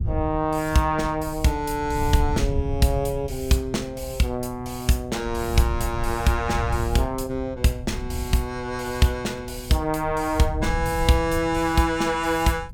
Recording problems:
wind on the microphone; below 96 Hz, SNR 9 dB

